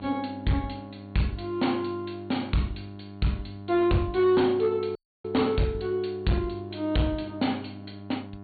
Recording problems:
treble cut off; nothing above 4.5 kHz
distorted audio; hard clipping, signal-to-distortion ratio 12 dB
hum; 50 Hz, harmonics up to 1.4 kHz, SNR 15 dB
audio cutting out; at 5 s

